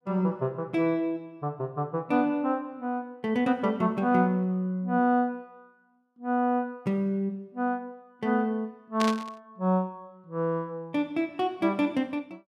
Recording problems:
static burst; at 9 s; peak 0 dB vs average level

